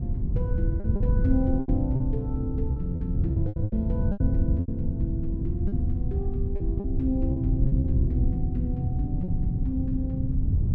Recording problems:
wind noise; below 110 Hz, SNR -4 dB
lost packets; 9% of the sound replaced, filled with repeated pitch periods

